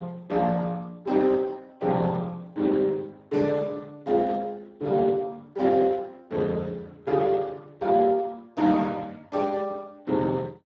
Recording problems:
lossy compression; Speex, log-spectral distance 3 dB

